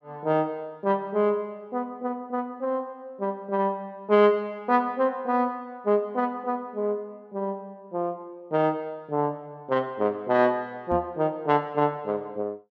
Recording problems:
microphone thump; at 11 s; peak -3 dB vs average level

